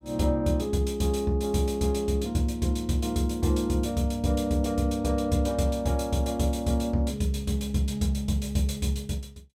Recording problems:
none

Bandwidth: 16 kHz